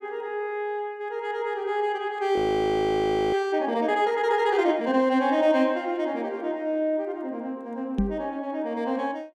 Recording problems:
audio freezing; at 2.5 s for 1 s
knock on the microphone; at 8 s; peak +5 dB vs average level

